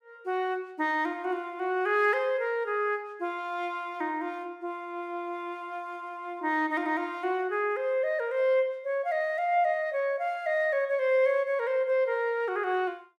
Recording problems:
none

